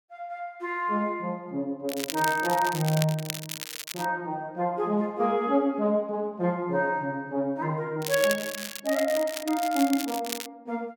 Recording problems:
crackling; from 2 to 4 s and from 8 to 10 s; loose cable, SNR 8 dB

